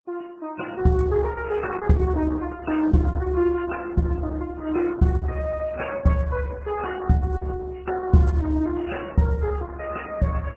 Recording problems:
codec artefacts; MP3, then Opus, log-spectral distance 4 dB, nothing above 7.8 kHz

